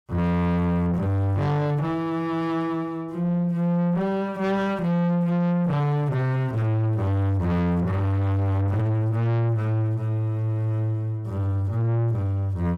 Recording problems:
distortion; soft clipping, signal-to-distortion ratio 6 dB

